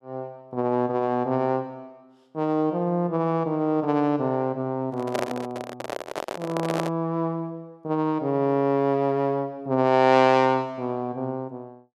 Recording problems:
microphone handling noise; from 5 to 7 s; peak +1 dB vs average level

